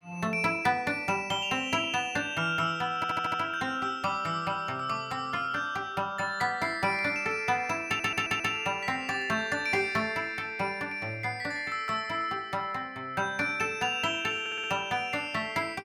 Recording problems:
audio stuttering; at 3 s, at 8 s and at 14 s

